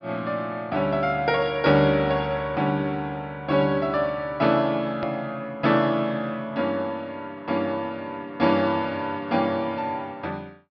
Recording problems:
low-pass filter; nothing above 5.5 kHz
edit click; at 5 s

